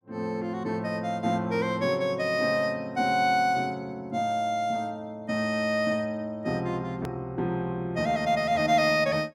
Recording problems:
edit click; at 7 s

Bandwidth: 16.5 kHz